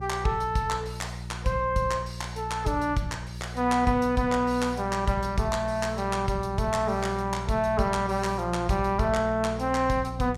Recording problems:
hum; 60 Hz, harmonics up to 540 Hz, SNR 10 dB

